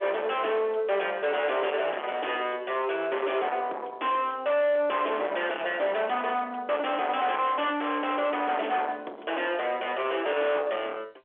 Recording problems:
telephone audio; 340 Hz to 3.4 kHz, G.711
distorted audio; soft clipping, signal-to-distortion ratio 7 dB

